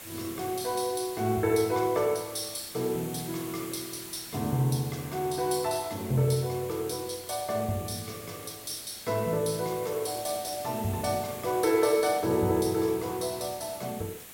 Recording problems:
background hiss; slope -2 dB per octave, SNR 13 dB

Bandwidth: 16.5 kHz